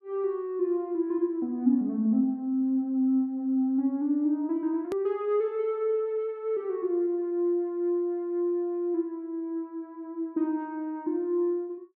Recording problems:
click at an edit; at 5 s

